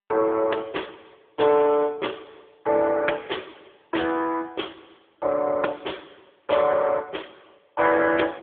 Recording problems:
telephone audio; 300 Hz to 3.5 kHz, AMR-NB

